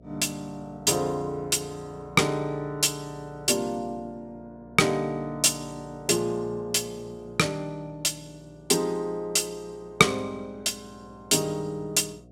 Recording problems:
hum; 60 Hz, harmonics up to 720 Hz, SNR 25 dB

